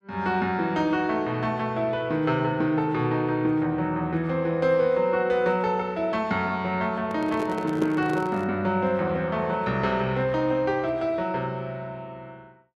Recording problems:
handling noise; from 7 to 8.5 s; peak -3 dB vs average level

